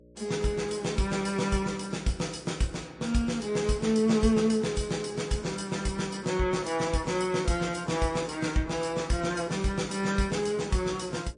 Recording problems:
lossy codec; MP3, log-spectral distance 5 dB
mains hum; 60 Hz, harmonics up to 600 Hz, SNR 26 dB

